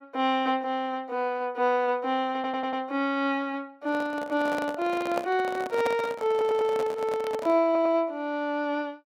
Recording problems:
audio stuttering; at 2.5 s, at 6.5 s and at 7.5 s
handling noise; from 4 to 7.5 s; peak +1 dB vs average level

